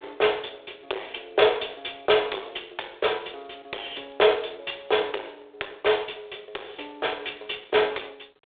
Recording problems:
telephone audio; 340 Hz to 3.6 kHz, G.726
distortion; soft clipping, signal-to-distortion ratio 13 dB

